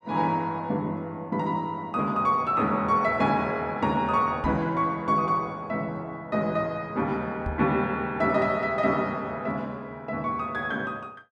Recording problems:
microphone bump; at 4.5 s and at 7.5 s; peak -2 dB vs average level

